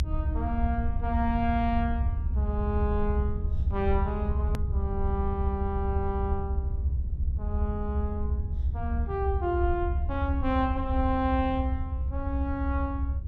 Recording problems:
low-frequency rumble; below 78 Hz, SNR -1 dB
click at an edit; at 4.5 s

